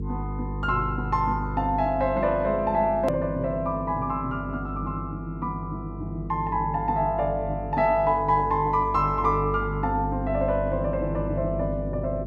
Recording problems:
hum; 50 Hz, harmonics up to 450 Hz, SNR 8 dB
edit click; at 3 s

